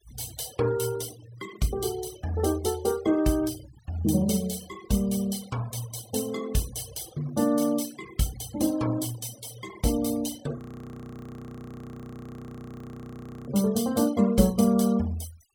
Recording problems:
denoising artefacts; signal-to-artefact ratio 19 dB
frozen audio; at 11 s for 3 s

